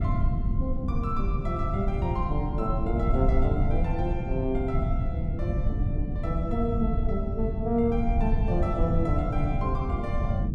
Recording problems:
rumble; below 120 Hz, SNR -2 dB

